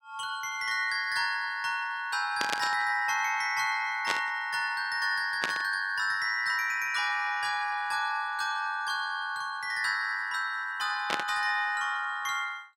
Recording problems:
burst of static; 4 times, first at 2.5 s; peak +4 dB vs average level

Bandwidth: 17 kHz